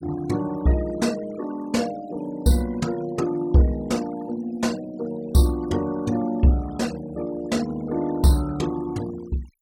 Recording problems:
noise reduction artefacts; signal-to-artefact ratio 19 dB

